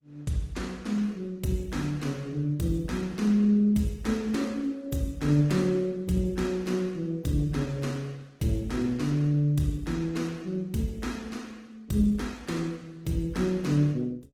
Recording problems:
lossy compression; Opus, log-spectral distance 3 dB, nothing above 19.5 kHz

